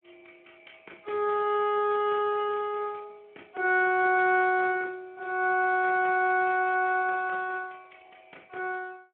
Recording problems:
phone line; 280 Hz to 2.6 kHz, Speex

